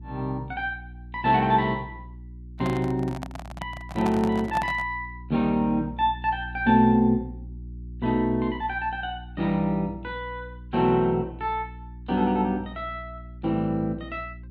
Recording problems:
electrical hum; 60 Hz, harmonics up to 360 Hz, SNR 16 dB
microphone handling noise; from 2.5 to 5 s; peak -3 dB vs average level

